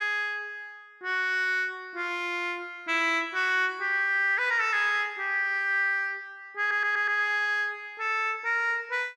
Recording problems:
stutter; at 6.5 s

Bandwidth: 14 kHz